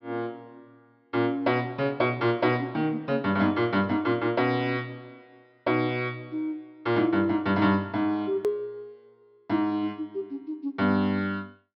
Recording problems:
treble missing; nothing above 5.5 kHz
edit click; at 8.5 s

